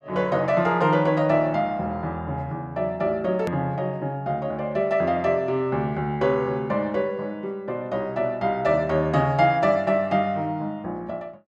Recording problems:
click at an edit; at 3.5 s

